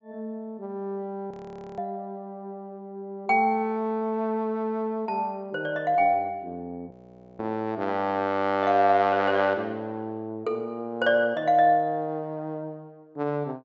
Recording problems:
treble missing; nothing above 8 kHz
audio freezing; at 1.5 s and at 7 s

